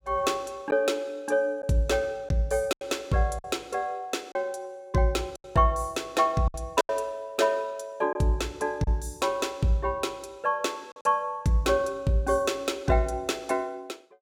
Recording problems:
lost packets; 4% of the sound replaced, filled with silence

